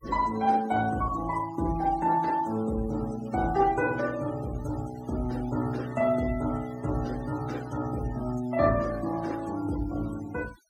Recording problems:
noise reduction artefacts; signal-to-artefact ratio 18 dB

